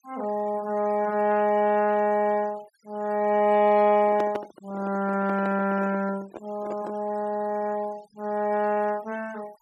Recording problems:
denoising artefacts; signal-to-artefact ratio 24 dB
microphone handling noise; from 4 to 7 s; peak -4 dB vs average level

